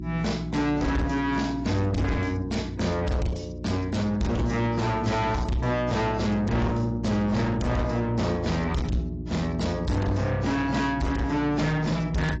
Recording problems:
codec artefacts; AAC, log-spectral distance 3 dB, nothing above 7.3 kHz
distortion; soft clipping, signal-to-distortion ratio 7 dB
hum; 60 Hz, harmonics up to 360 Hz, SNR 9 dB

